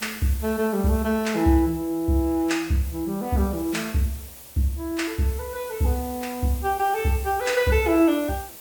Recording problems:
background hiss; SNR 15 dB

